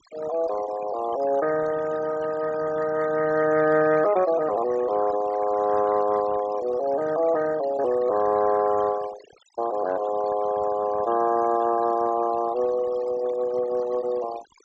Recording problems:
treble cut off; nothing above 8 kHz
noise reduction artefacts; signal-to-artefact ratio 15 dB

